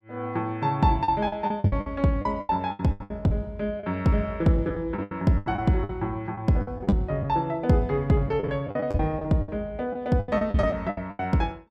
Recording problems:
packet loss; 14% of the sound replaced, filled with the last packet

